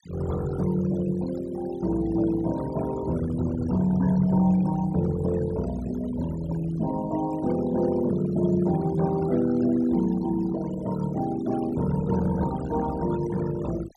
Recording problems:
noise reduction artefacts; signal-to-artefact ratio 16 dB

